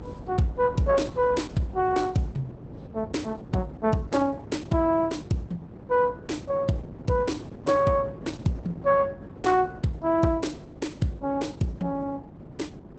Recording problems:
codec artefacts; Opus, log-spectral distance 3 dB, nothing above 8 kHz
electrical hum; 50 Hz, harmonics up to 600 Hz, SNR 22 dB
wind noise; below 350 Hz, SNR 16 dB

